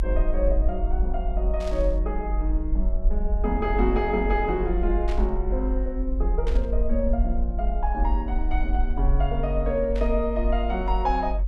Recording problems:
rumble; below 48 Hz, strongest tone 46 Hz, SNR -1 dB
burst of static; 4 times, first at 1.5 s; peak -8 dB vs average level

